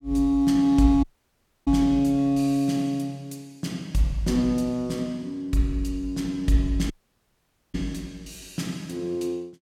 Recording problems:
audio cutting out; at 1 s for 0.5 s and at 7 s for 1 s

